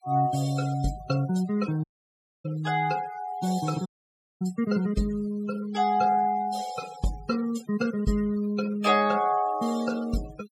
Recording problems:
denoising artefacts; signal-to-artefact ratio 17 dB
dropout; at 2 s for 0.5 s and at 4 s for 0.5 s

